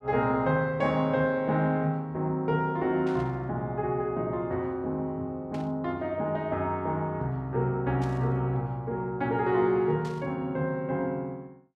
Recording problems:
static burst; 4 times, first at 3 s; peak -14 dB vs average level

